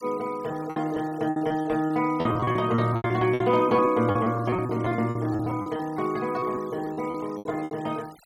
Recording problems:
denoising artefacts; signal-to-artefact ratio 23 dB
lost packets; 18% of the sound replaced, filled with repeated pitch periods

